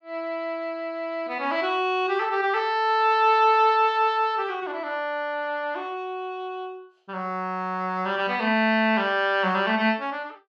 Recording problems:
none

